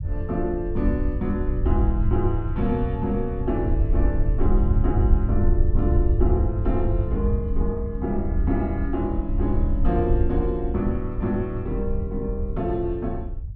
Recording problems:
low-frequency rumble; below 80 Hz, SNR -1 dB

